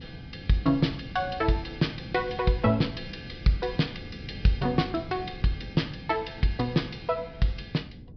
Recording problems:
treble cut off; nothing above 5.5 kHz
wind on the microphone; below 220 Hz, SNR 15 dB

